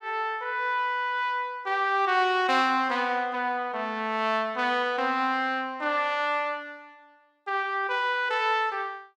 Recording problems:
none

